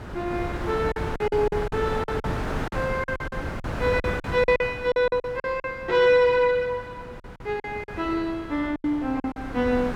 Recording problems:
wind on the microphone; below 940 Hz, SNR 9 dB
lost packets; 11% of the sound replaced, filled with silence

